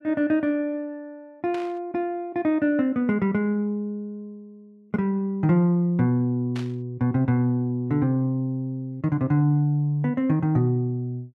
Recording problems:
burst of static; at 1.5 s and at 6.5 s; peak -11 dB vs average level

